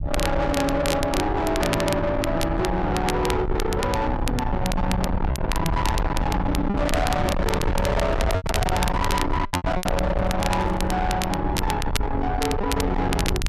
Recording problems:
distorted audio; soft clipping, signal-to-distortion ratio 6 dB
low-frequency rumble; below 550 Hz, SNR 3 dB
crackle; vinyl, SNR 11 dB
lost packets; 4% of the sound replaced, filled with repeated pitch periods
microphone handling noise; from 7.5 to 11 s; peak -8 dB vs average level

